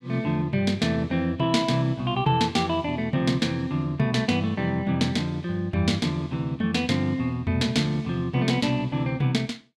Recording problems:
none

